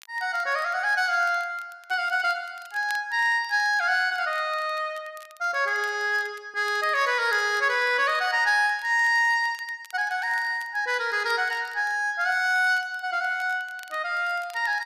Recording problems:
crackle; vinyl, SNR 27 dB

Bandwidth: 14.5 kHz